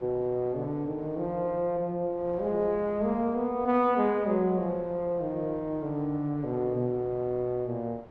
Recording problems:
wind on the microphone; below 760 Hz, SNR 21 dB

